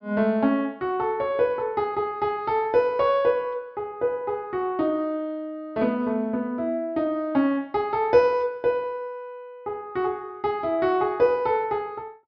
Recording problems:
low-pass filter; nothing above 5.5 kHz

